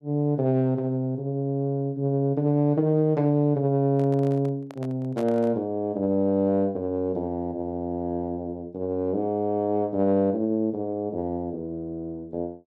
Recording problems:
handling noise; from 4 to 5.5 s; peak -7 dB vs average level

